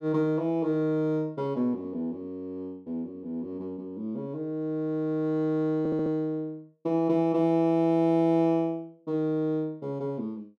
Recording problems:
stutter; at 6 s

